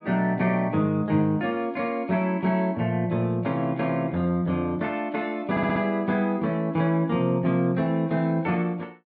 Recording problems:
audio stuttering; at 5.5 s

